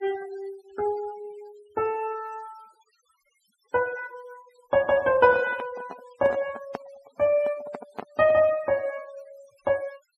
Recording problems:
denoising artefacts; signal-to-artefact ratio 23 dB
handling noise; from 5 to 8.5 s; peak -5 dB vs average level

